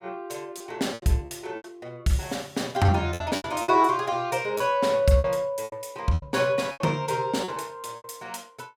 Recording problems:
packet loss; 11% of the sound replaced, filled with repeated pitch periods

